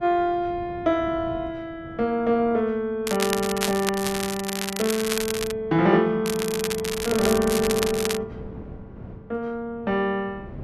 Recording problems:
wind on the microphone; below 310 Hz, SNR 18 dB
crackling; from 3 to 5.5 s and from 6.5 to 8 s; loose cable, SNR 5 dB

